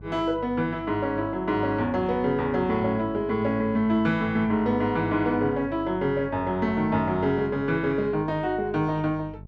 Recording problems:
hum; 50 Hz, harmonics up to 650 Hz, SNR 18 dB

